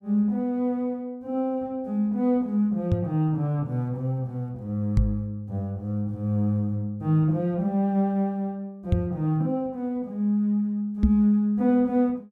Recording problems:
knock on the microphone; 4 times, first at 3 s; peak +7 dB vs average level

